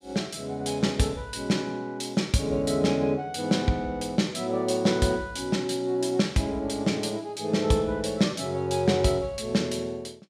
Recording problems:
none

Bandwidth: 15 kHz